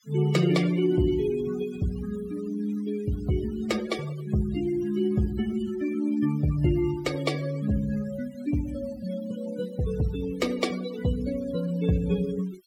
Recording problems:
denoising artefacts; signal-to-artefact ratio 17 dB

